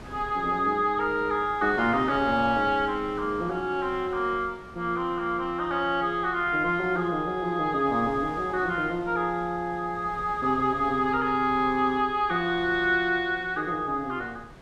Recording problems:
wind noise; below 880 Hz, SNR 20 dB

